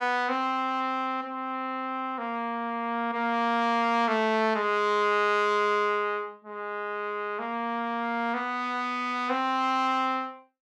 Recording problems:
none

